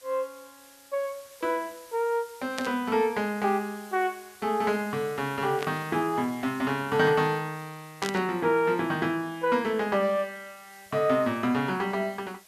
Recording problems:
background hiss; slope +1 dB per octave, SNR 23 dB
static burst; at 2.5 s, at 5.5 s and at 8 s; peak -1 dB vs average level

